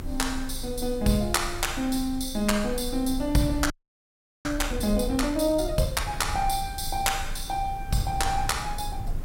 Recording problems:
hiss; SNR 27 dB
low-frequency rumble; below 64 Hz, strongest tone 24 Hz, SNR 11 dB
audio freezing; at 3.5 s for 1 s

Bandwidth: 16 kHz